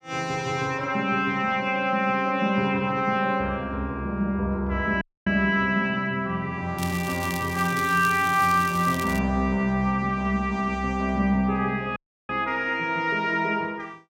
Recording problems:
dropout; at 5 s and at 12 s
crackling; from 7 to 9 s; loose cable, SNR 13 dB

